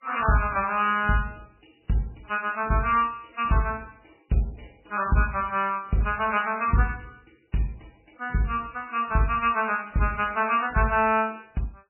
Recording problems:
lossy compression; MP3, then MP3, log-spectral distance 8 dB, nothing above 2.7 kHz

